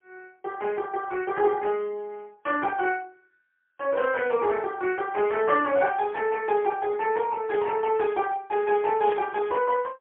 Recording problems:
phone line; 300 Hz to 3 kHz, AMR-NB, then MP3
static burst; at 5.5 s, at 7.5 s and at 9 s; peak -11 dB vs average level

